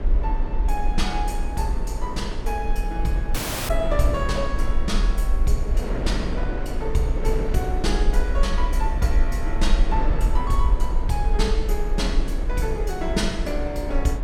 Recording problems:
low-frequency rumble; below 46 Hz, SNR -1 dB
wind on the microphone; below 530 Hz, SNR 5 dB
dropout; at 3.5 s

